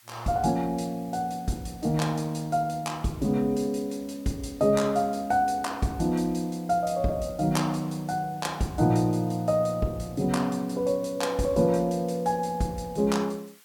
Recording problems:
background hiss; SNR 26 dB

